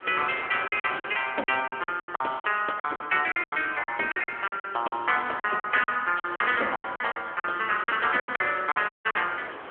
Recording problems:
telephone audio; 300 Hz to 3.3 kHz, AMR-NB
wind on the microphone; below 1.7 kHz, SNR 16 dB
packet loss; 16% of the sound replaced, filled with silence
dropout; at 9 s

